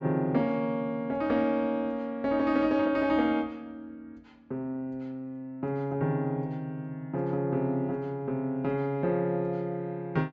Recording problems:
treble cut off; nothing above 8 kHz

